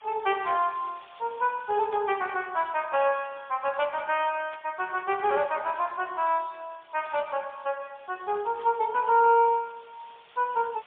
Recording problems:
phone line; 340 Hz to 3.5 kHz, AMR-NB, then MP3
background hiss; SNR 27 dB
static burst; 4 times, first at 2 s; peak -15 dB vs average level

